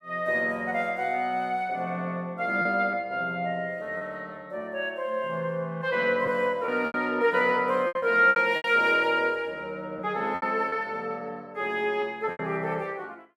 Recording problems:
lost packets; 5% of the sound replaced, filled with repeated pitch periods

